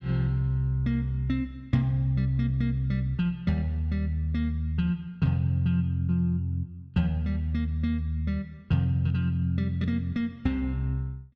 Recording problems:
none

